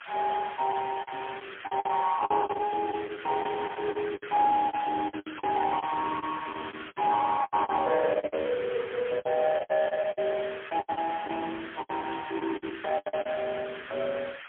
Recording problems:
phone line; 260 Hz to 3.4 kHz, AMR-NB, then MP3
hiss; SNR 13 dB
lost packets; 14% of the sound replaced, filled with the last packet

